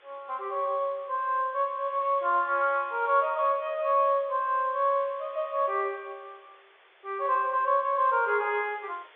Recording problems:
telephone audio; 300 Hz to 3.7 kHz, G.711
hiss; SNR 28 dB

